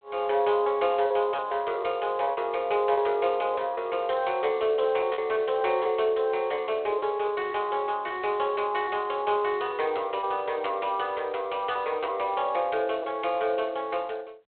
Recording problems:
phone line; 340 Hz to 3.6 kHz, G.726
lost packets; 5% of the sound replaced, filled with repeated pitch periods

